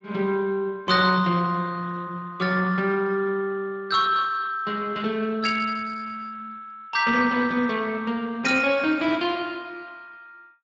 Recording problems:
lossy compression; Speex, log-spectral distance 3 dB

